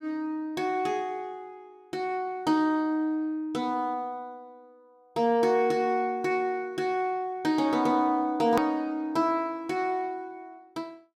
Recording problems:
hard cut with a click; at 8.5 s

